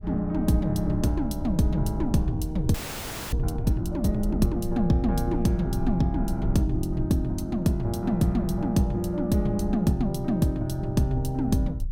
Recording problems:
rumble; below 64 Hz, SNR 10 dB
audio freezing; at 2.5 s for 0.5 s

